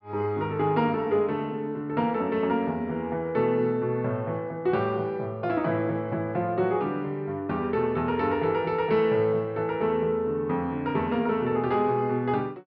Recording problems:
low-pass filter; nothing above 5.5 kHz

